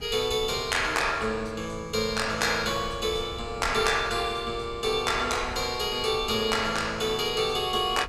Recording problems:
wind noise; below 220 Hz, SNR 17 dB

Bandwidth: 14.5 kHz